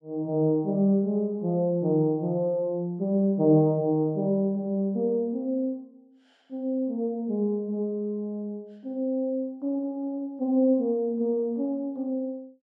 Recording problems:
none

